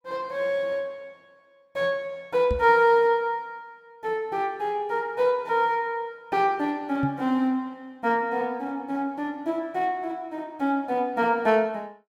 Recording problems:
microphone thump; at 2.5 s and at 7 s; peak -1 dB vs average level

